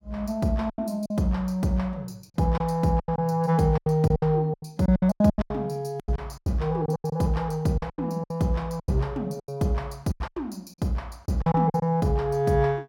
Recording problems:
lost packets; 14% of the sound replaced, filled with silence

